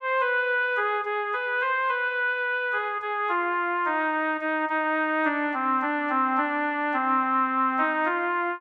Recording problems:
none

